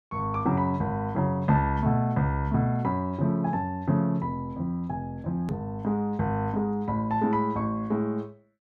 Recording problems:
edit click; at 5.5 s

